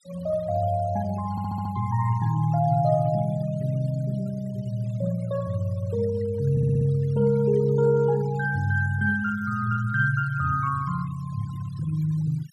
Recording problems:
denoising artefacts; signal-to-artefact ratio 21 dB
audio stuttering; at 1.5 s and at 6.5 s

